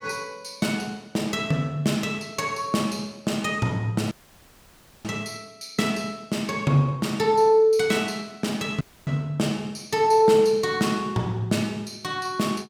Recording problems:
audio cutting out; at 4 s for 1 s and at 9 s

